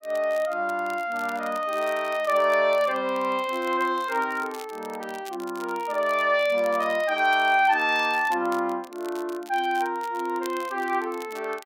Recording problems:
crackle; vinyl, SNR 22 dB

